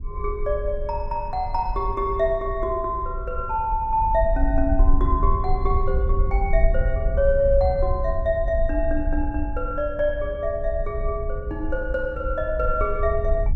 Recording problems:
low-frequency rumble; below 60 Hz, SNR 3 dB

